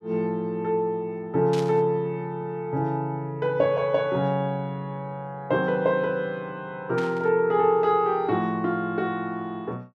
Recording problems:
static burst; at 1.5 s and at 7 s; peak -7 dB vs average level

